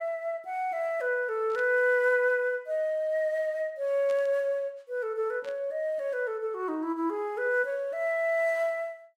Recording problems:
burst of static; at 1.5 s, at 4 s and at 5.5 s; peak -15 dB vs average level

